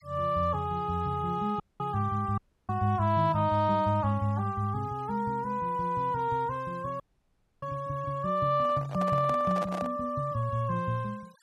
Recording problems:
noise reduction artefacts; signal-to-artefact ratio 27 dB
dropout; at 1.5 s, at 2.5 s and at 7 s for 0.5 s
handling noise; from 8.5 to 10 s; peak -5 dB vs average level

